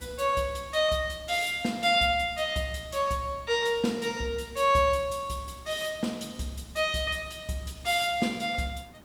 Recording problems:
background hiss; slope -6 dB per octave, SNR 25 dB

